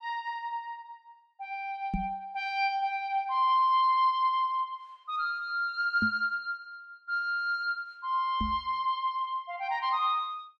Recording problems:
microphone thump; at 2 s, at 6 s and at 8.5 s; peak +1 dB vs average level

